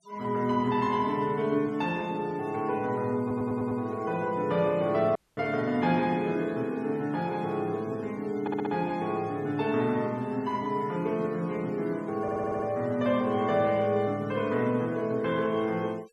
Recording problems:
noise reduction artefacts; signal-to-artefact ratio 25 dB
stutter; at 3 s, at 8.5 s and at 12 s
audio cutting out; at 5 s

